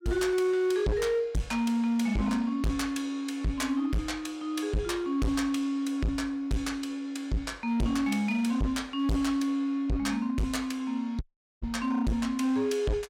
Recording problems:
distortion; hard clipping, signal-to-distortion ratio 6 dB
audio cutting out; at 11 s

